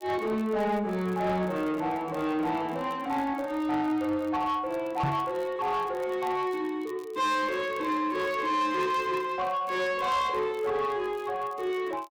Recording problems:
distortion; soft clipping, signal-to-distortion ratio 11 dB
crackle; vinyl, SNR 28 dB
microphone bump; at 5 s; peak +3 dB vs average level

